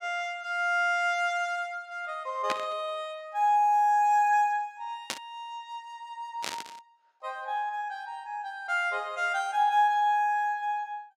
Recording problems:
static burst; at 2.5 s, at 5 s and at 6.5 s; peak 0 dB vs average level

